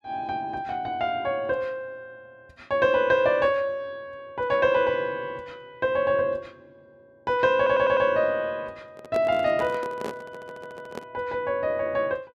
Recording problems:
audio stuttering; at 7.5 s and at 10 s
microphone handling noise; from 9 to 11 s; peak -4 dB vs average level

